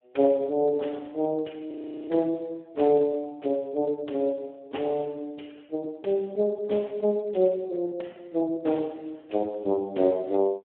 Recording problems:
telephone audio; 240 Hz to 3.4 kHz, Speex
frozen audio; at 1.5 s

